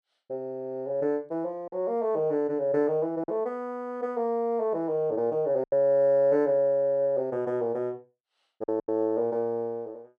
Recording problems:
lost packets; 3% of the sound replaced, filled with silence

